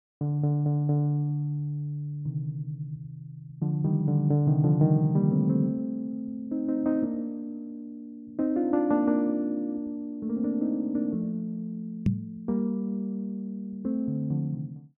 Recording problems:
knock on the microphone; at 12 s; peak +7 dB vs average level

